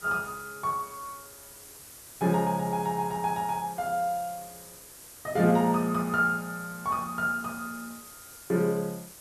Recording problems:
hiss; SNR 17 dB

